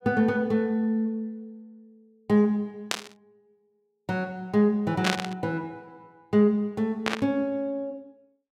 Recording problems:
static burst; at 3 s, at 5 s and at 7 s; peak +4 dB vs average level

